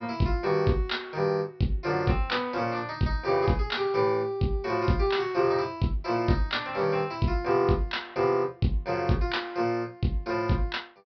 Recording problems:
treble cut off; nothing above 5.5 kHz

